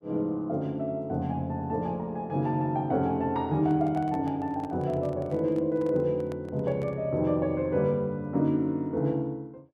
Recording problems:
microphone handling noise; from 3.5 to 7 s; peak -11 dB vs average level

